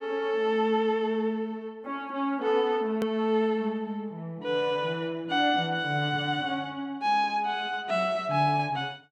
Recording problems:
click at an edit; at 3 s

